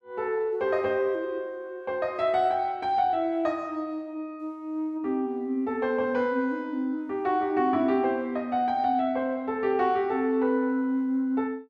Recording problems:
none

